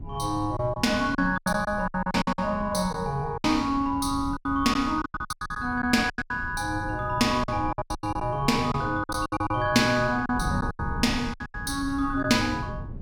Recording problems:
wind on the microphone; below 160 Hz, SNR 12 dB
lost packets; 14% of the sound replaced, filled with silence

